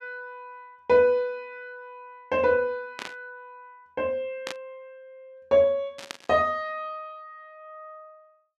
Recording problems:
burst of static; at 3 s, at 4.5 s and at 6 s; peak -5 dB vs average level

